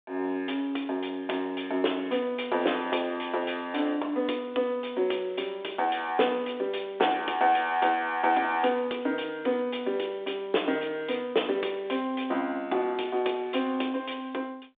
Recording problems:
phone line; 260 Hz to 3.6 kHz, G.726

